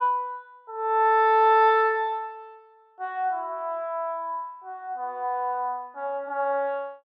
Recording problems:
none

